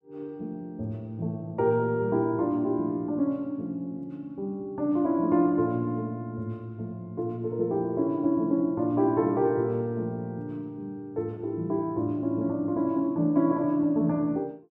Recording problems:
none

